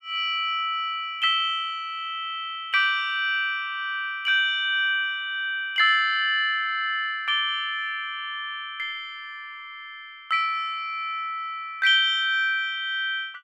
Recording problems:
none

